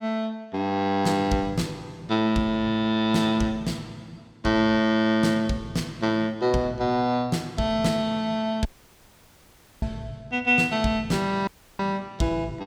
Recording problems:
audio cutting out; at 8.5 s for 1 s and at 11 s

